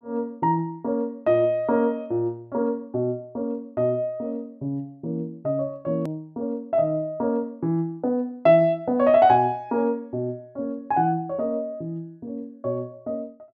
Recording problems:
click at an edit; at 6 s

